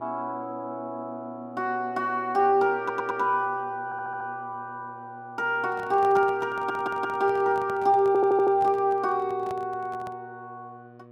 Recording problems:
hum; 60 Hz, harmonics up to 1.7 kHz, SNR 23 dB
stutter; 4 times, first at 3 s
microphone handling noise; from 5.5 to 10 s; peak -10 dB vs average level

